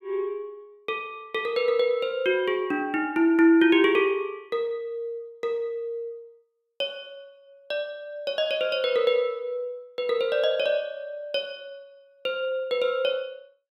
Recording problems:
none

